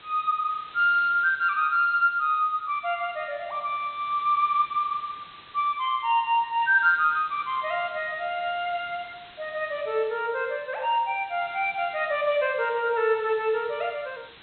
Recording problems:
low-pass filter; nothing above 4.1 kHz
hiss; SNR 23 dB

